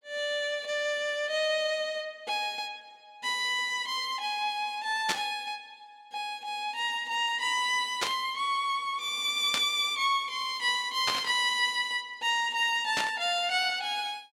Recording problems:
static burst; 5 times, first at 5 s; peak +4 dB vs average level

